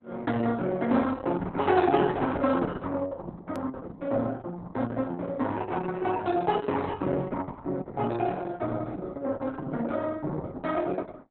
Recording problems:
codec artefacts; Opus, log-spectral distance 3 dB, nothing above 13.1 kHz
hard cut with a click; at 3.5 s

